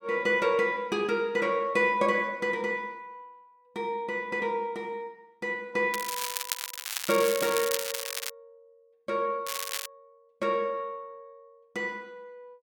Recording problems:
crackle; from 6 to 8.5 s and at 9.5 s; loose cable, SNR 4 dB

